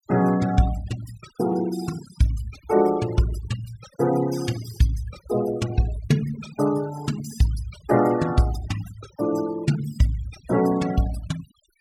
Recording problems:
noise reduction artefacts; signal-to-artefact ratio 17 dB

